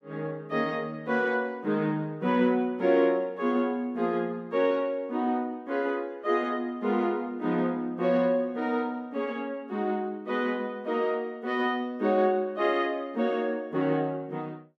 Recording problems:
none

